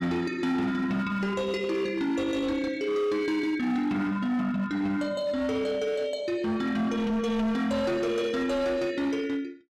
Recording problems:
distortion; hard clipping, signal-to-distortion ratio 10 dB

